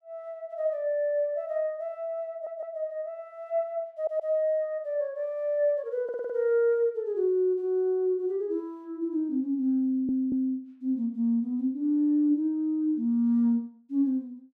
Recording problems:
audio stuttering; 4 times, first at 2.5 s

